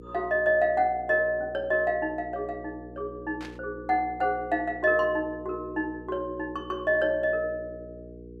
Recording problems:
electrical hum; 60 Hz, harmonics up to 480 Hz, SNR 17 dB
static burst; at 3.5 s; peak -12 dB vs average level

